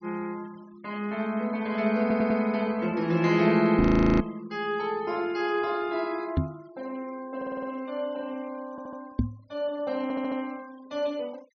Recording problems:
low-pass filter; nothing above 6.3 kHz
noise reduction artefacts; signal-to-artefact ratio 25 dB
stutter; 4 times, first at 2 s
knock on the microphone; at 4 s, at 6.5 s and at 9 s; peak +6 dB vs average level
audio freezing; at 4 s

